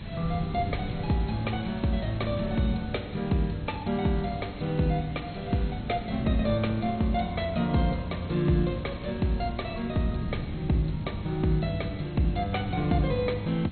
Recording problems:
lossy compression; MP2, log-spectral distance 7 dB, nothing above 4.2 kHz
background hiss; SNR 21 dB
wind noise; below 210 Hz, SNR 9 dB

